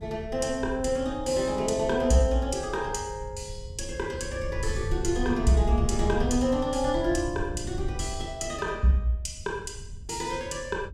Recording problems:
wind on the microphone; below 88 Hz, SNR 9 dB

